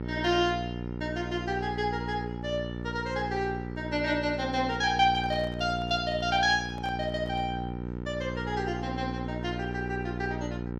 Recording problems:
electrical hum; 60 Hz, harmonics up to 960 Hz, SNR 6 dB
microphone handling noise; from 5 to 7.5 s; peak -11 dB vs average level

